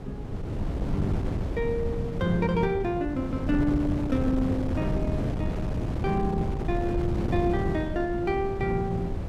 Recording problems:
wind on the microphone; below 250 Hz, SNR 2 dB

